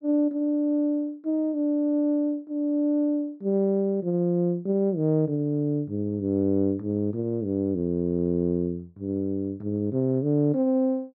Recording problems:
none

